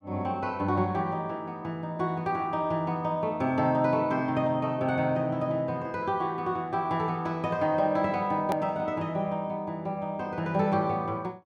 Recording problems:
click at an edit; at 8.5 s

